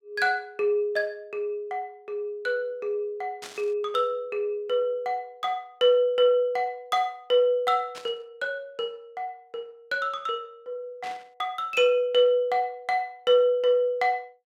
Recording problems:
burst of static; at 3.5 s, at 8 s and at 11 s; peak -9 dB vs average level

